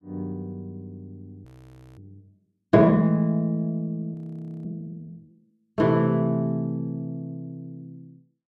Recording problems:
frozen audio; at 1.5 s for 0.5 s and at 4 s for 0.5 s

